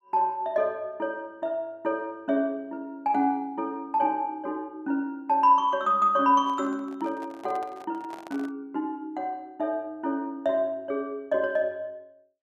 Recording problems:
handling noise; from 6.5 to 8.5 s; peak -10 dB vs average level

